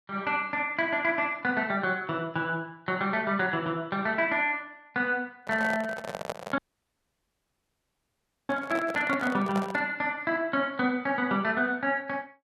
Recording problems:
handling noise; from 5.5 to 10 s; peak -1 dB vs average level
audio cutting out; at 6.5 s for 2 s

